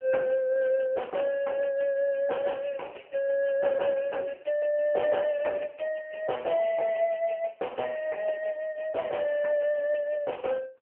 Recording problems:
telephone audio; 340 Hz to 3.2 kHz, AMR-NB

